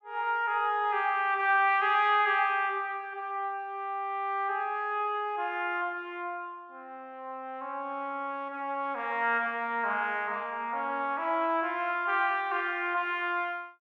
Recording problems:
none

